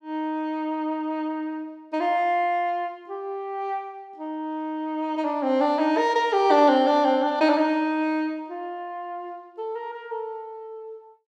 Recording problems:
none

